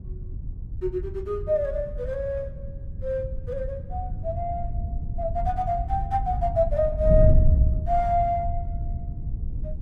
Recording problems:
wind noise; below 94 Hz, SNR 2 dB

